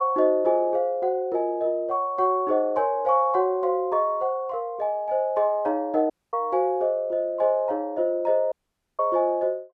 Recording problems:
dropout; at 6 s and at 8.5 s

